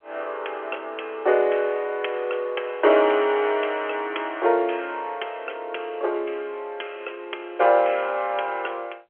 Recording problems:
phone line; 340 Hz to 3.3 kHz, G.711

